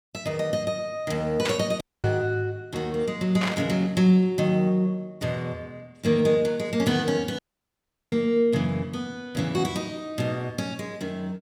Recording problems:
static burst; at 1.5 s and at 3.5 s; peak +1 dB vs average level
audio cutting out; at 2 s and at 7.5 s for 0.5 s

